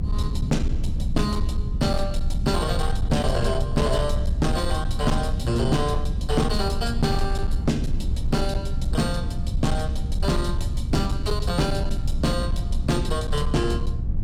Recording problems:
distortion; hard clipping, uneven, signal-to-distortion ratio 11 dB
low-frequency rumble; below 84 Hz, strongest tone 22 Hz, SNR 1 dB
wind noise; below 250 Hz, SNR 18 dB

